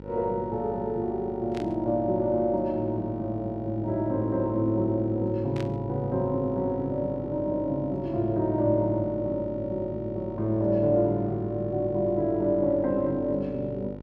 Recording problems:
mains hum; 50 Hz, harmonics up to 1.4 kHz, SNR 14 dB
burst of static; at 1.5 s and at 5.5 s; peak -9 dB vs average level

